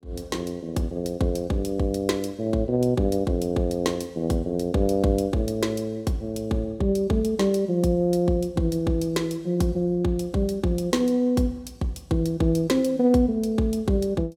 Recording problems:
none

